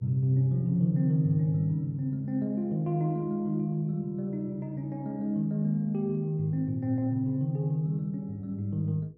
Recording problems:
hum; 60 Hz, harmonics up to 480 Hz, SNR 32 dB

